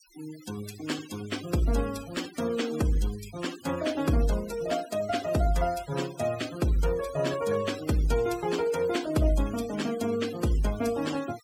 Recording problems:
noise reduction artefacts; signal-to-artefact ratio 14 dB

